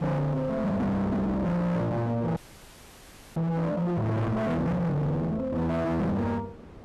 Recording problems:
distorted audio; hard clipping, signal-to-distortion ratio 6 dB
wind on the microphone; below 580 Hz, SNR 20 dB
frozen audio; at 2.5 s for 1 s

